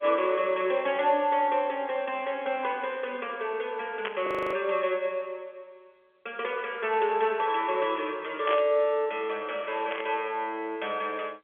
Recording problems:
phone line; 300 Hz to 3.4 kHz, G.711
burst of static; at 4 s, at 8.5 s and at 10 s; peak -1 dB vs average level
audio freezing; at 4.5 s

